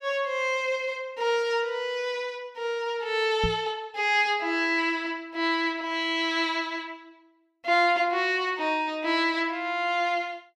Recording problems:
knock on the microphone; at 3.5 s; peak 0 dB vs average level

